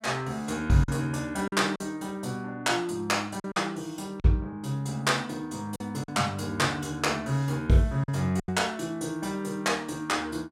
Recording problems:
lost packets; 4% of the sound replaced, filled with silence

